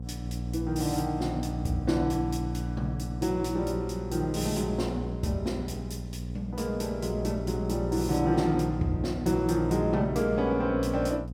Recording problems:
hum; 60 Hz, harmonics up to 540 Hz, SNR 6 dB

